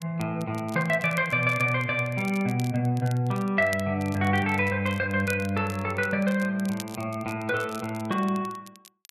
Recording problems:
crackle; vinyl, SNR 20 dB

